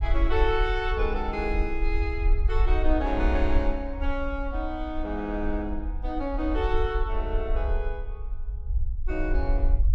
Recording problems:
rumble; below 54 Hz, SNR 0 dB

